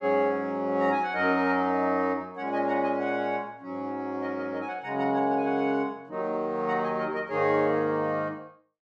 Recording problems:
none

